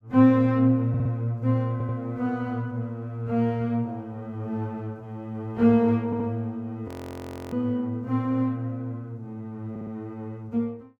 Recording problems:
audio stuttering; 4 times, first at 1 s
audio freezing; at 7 s for 0.5 s

